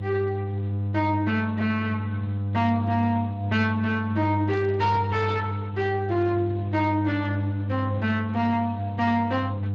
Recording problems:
lossy codec; Speex, log-spectral distance 2 dB
distorted audio; soft clipping, signal-to-distortion ratio 12 dB
hum; 50 Hz, harmonics up to 500 Hz, SNR 3 dB
static burst; at 4.5 s; peak -19 dB vs average level

